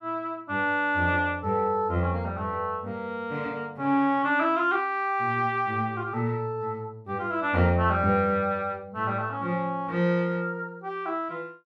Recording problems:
none

